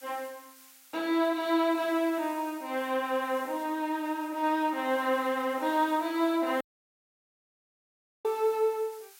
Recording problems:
background hiss; SNR 22 dB
dropout; at 6.5 s for 1.5 s

